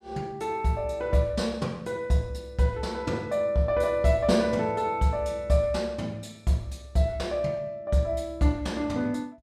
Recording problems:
none

